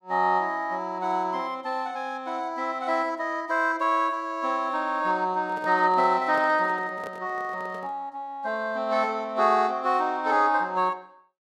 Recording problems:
handling noise; from 5.5 to 8 s; peak -10 dB vs average level

